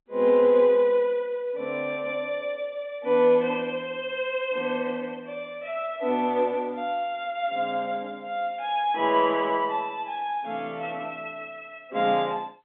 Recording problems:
phone line; 220 Hz to 3.9 kHz, G.711

